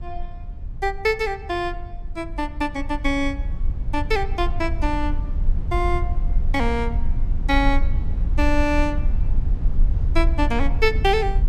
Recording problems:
low-frequency rumble; below 58 Hz, SNR 1 dB

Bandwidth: 15 kHz